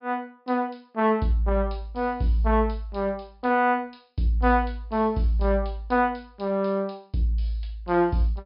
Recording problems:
low-pass filter; nothing above 5.5 kHz

